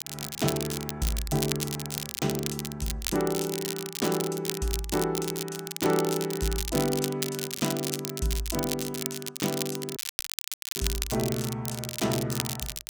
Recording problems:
crackling; vinyl, SNR 3 dB
dropout; at 10 s for 1 s

